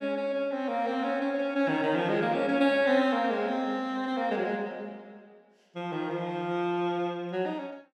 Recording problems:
none

